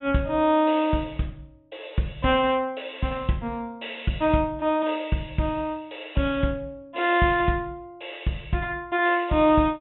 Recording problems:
low-pass filter; nothing above 3.7 kHz

